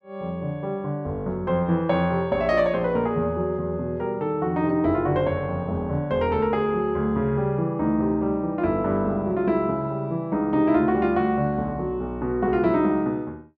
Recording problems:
none

